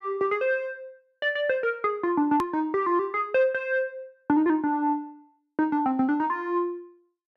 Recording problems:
edit click; at 2.5 s

